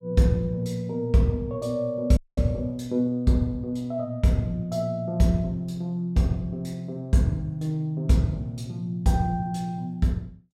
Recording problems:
audio cutting out; at 2 s

